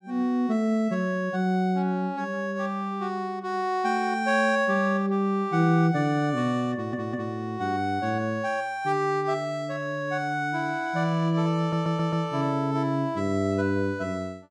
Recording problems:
audio stuttering; at 6.5 s and at 12 s

